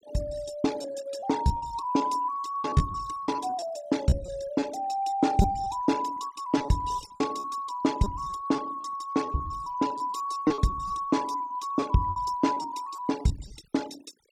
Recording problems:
noise reduction artefacts; signal-to-artefact ratio 19 dB
lost packets; 12% of the sound replaced, filled with repeated pitch periods

